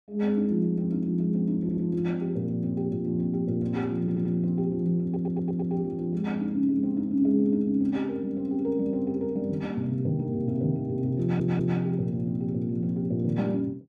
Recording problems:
audio stuttering; 4 times, first at 1.5 s

